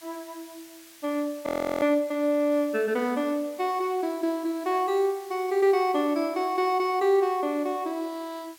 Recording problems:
hiss; slope +2 dB per octave, SNR 23 dB
audio freezing; at 1.5 s

